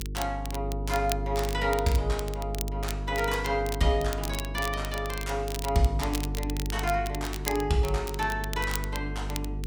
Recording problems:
electrical hum; 50 Hz, harmonics up to 450 Hz, SNR 5 dB
crackling; vinyl, SNR 10 dB

